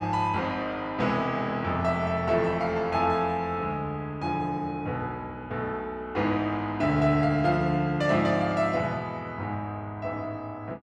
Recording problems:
none

